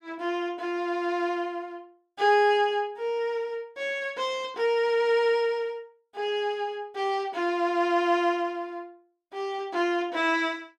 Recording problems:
none

